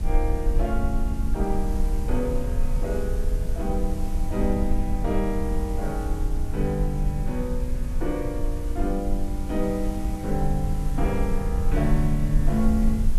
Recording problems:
background hiss; slope -4 dB per octave, SNR 16 dB
rumble; below 56 Hz, strongest tone 22 Hz, SNR 0 dB

